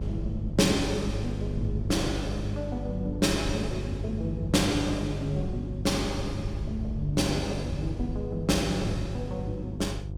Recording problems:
mains hum; 50 Hz, harmonics up to 550 Hz, SNR 6 dB
wind noise; below 92 Hz, SNR 12 dB

